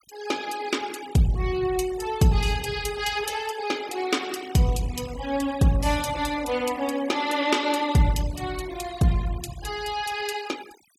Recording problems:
noise reduction artefacts; signal-to-artefact ratio 17 dB

